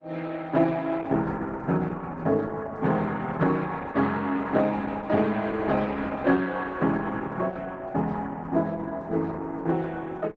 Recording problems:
lossy compression; Opus, log-spectral distance 3 dB, nothing above 7.3 kHz

